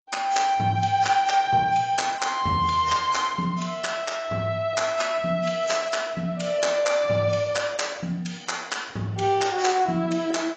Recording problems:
lossy compression; AAC, log-spectral distance 4 dB, nothing above 7.6 kHz

